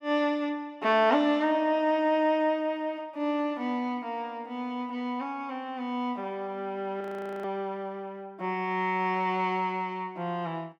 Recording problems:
audio freezing; at 7 s

